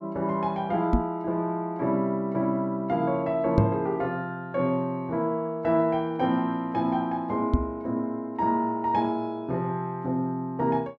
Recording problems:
microphone bump; at 1 s, at 3.5 s and at 7.5 s; peak +8 dB vs average level

